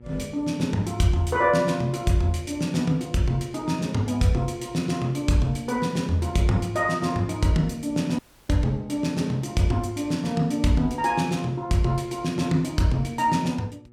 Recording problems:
electrical hum; 60 Hz, harmonics up to 840 Hz, SNR 25 dB
dropout; at 8 s

